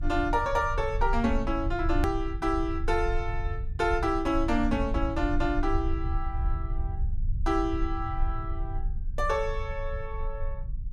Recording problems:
rumble; below 64 Hz, strongest tone 26 Hz, SNR 4 dB
click at an edit; at 2 s

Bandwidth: 14.5 kHz